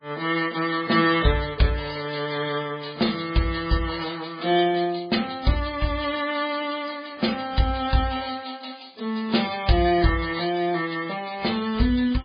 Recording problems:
codec artefacts; MP3, then MP3, log-spectral distance 9 dB, nothing above 4.6 kHz

